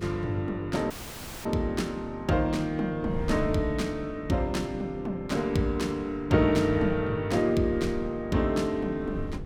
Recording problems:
electrical hum; 50 Hz, harmonics up to 500 Hz, SNR 16 dB
wind noise; below 110 Hz, SNR 16 dB
audio cutting out; at 1 s for 0.5 s

